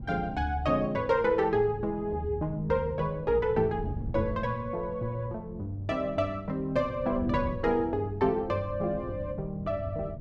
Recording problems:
wind on the microphone; below 170 Hz, SNR 12 dB

